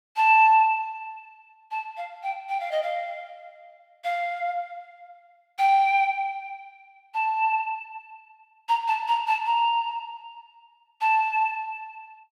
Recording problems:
none

